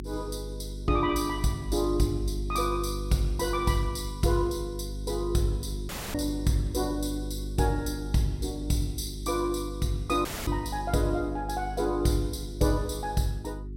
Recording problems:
electrical hum; 50 Hz, harmonics up to 400 Hz, SNR 7 dB
audio cutting out; at 6 s and at 10 s

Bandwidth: 16 kHz